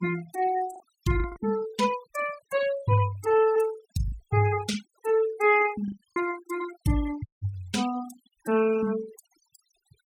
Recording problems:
noise reduction artefacts; signal-to-artefact ratio 16 dB
packet loss; 3% of the sound replaced, filled with the last packet
audio cutting out; at 7.5 s

